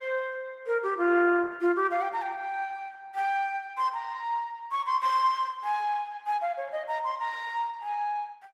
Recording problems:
lossy compression; Opus, log-spectral distance 2 dB

